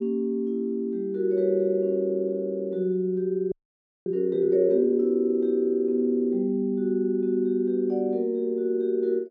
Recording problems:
audio freezing; at 3.5 s for 0.5 s

